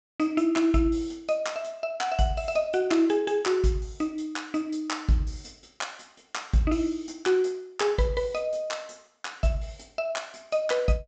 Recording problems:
treble missing; nothing above 8 kHz

